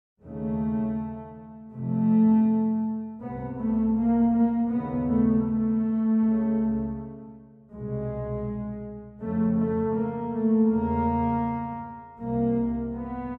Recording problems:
none

